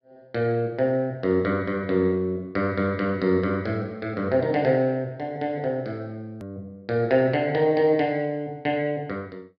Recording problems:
low-pass filter; nothing above 5.5 kHz
hard cut with a click; at 6.5 s

